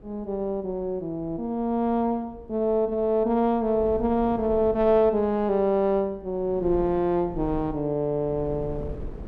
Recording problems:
wind on the microphone; below 240 Hz, SNR 18 dB

